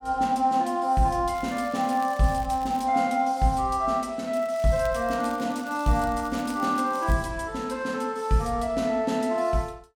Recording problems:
crackling; from 1.5 to 3 s and from 4.5 to 7 s; loose cable, SNR 23 dB

